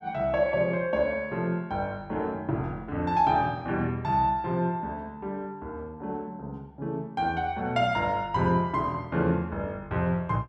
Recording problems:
none

